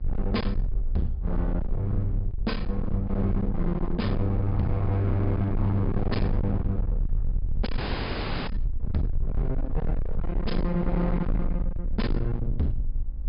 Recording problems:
treble missing; nothing above 5.1 kHz
distorted audio; hard clipping, signal-to-distortion ratio 7 dB
hum; 50 Hz, harmonics up to 1.1 kHz, SNR 26 dB
low-frequency rumble; below 62 Hz, SNR 3 dB
dropout; at 8 s for 0.5 s

